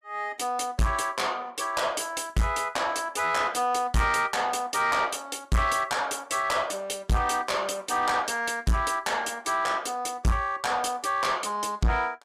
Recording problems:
distorted audio; soft clipping, signal-to-distortion ratio 6 dB

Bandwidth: 14.5 kHz